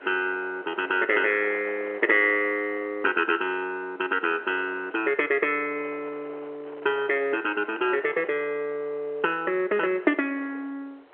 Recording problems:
phone line; 320 Hz to 3.2 kHz, G.711
wind on the microphone; below 1.3 kHz, SNR 21 dB

